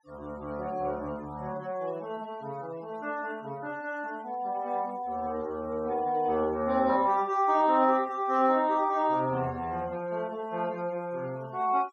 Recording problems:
noise reduction artefacts; signal-to-artefact ratio 24 dB

